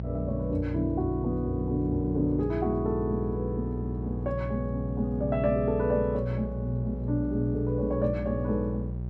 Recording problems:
hum; 60 Hz, harmonics up to 600 Hz, SNR 5 dB

